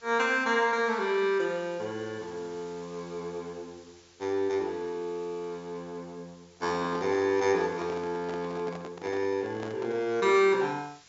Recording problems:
treble cut off; nothing above 7.4 kHz
background hiss; slope +1 dB per octave, SNR 27 dB
handling noise; from 6.5 to 10 s; peak -7 dB vs average level

